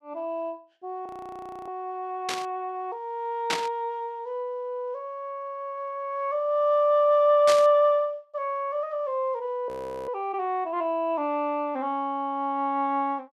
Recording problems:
frozen audio; at 1 s for 0.5 s and at 9.5 s
static burst; at 2.5 s, at 3.5 s and at 7.5 s; peak +3 dB vs average level

